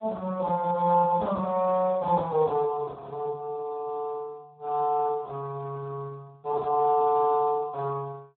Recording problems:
telephone audio; 220 Hz to 2.4 kHz, Speex

